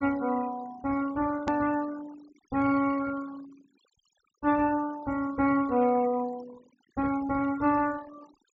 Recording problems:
treble cut off; nothing above 8 kHz
noise reduction artefacts; signal-to-artefact ratio 21 dB
click at an edit; at 1.5 s

